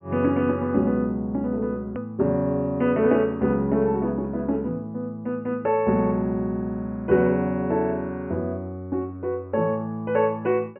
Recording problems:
low-pass filter; nothing above 3 kHz
edit click; at 2 s

